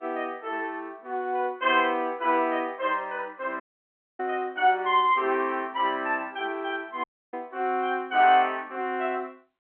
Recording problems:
telephone audio; 220 Hz to 3.4 kHz, G.711
dropout; at 3.5 s for 0.5 s and at 7 s

